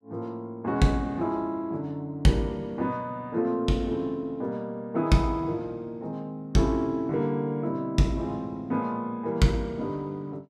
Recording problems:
none

